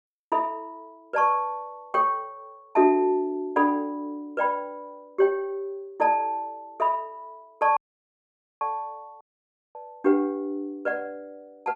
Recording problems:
dropout; at 8 s for 1 s and at 9 s for 0.5 s

